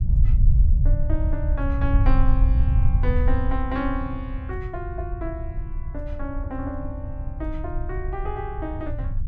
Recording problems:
low-frequency rumble; below 74 Hz, SNR -7 dB

